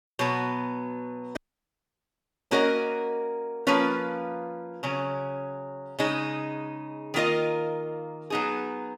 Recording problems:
dropout; at 1.5 s for 1 s

